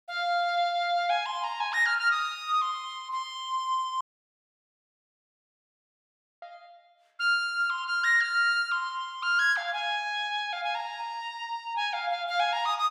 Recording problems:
audio cutting out; at 4 s for 2.5 s

